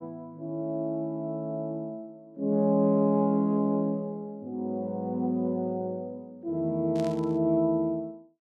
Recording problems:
static burst; at 7 s; peak -12 dB vs average level

